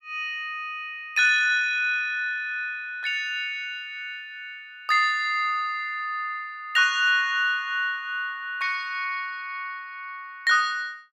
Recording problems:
none

